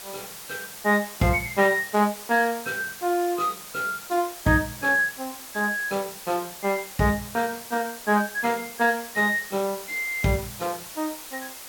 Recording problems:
hiss; slope 0 dB per octave, SNR 13 dB

